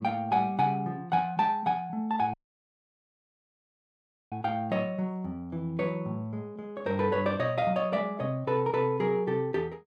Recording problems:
audio cutting out; at 2.5 s for 2 s

